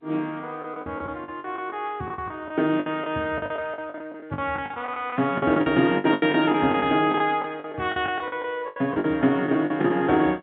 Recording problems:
phone line; 150 Hz to 3.7 kHz, G.711
packet loss; 16% of the sound replaced, filled with the last packet

